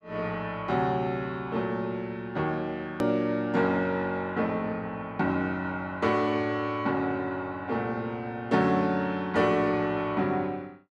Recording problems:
edit click; at 3 s

